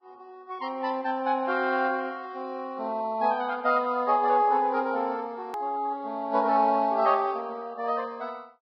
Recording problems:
lossy compression; Vorbis, log-spectral distance 2 dB
click at an edit; at 5.5 s

